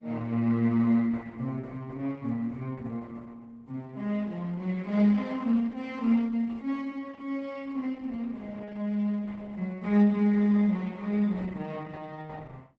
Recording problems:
lossy compression; Opus, log-spectral distance 3 dB

